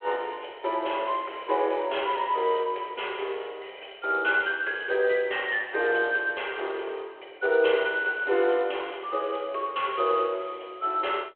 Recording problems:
telephone audio; 320 Hz to 3.3 kHz, G.726

